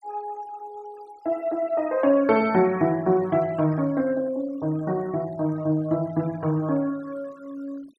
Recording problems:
noise reduction artefacts; signal-to-artefact ratio 24 dB

